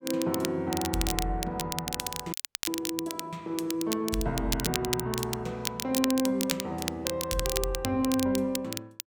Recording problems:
crackle; vinyl, SNR 3 dB
audio cutting out; at 2.5 s

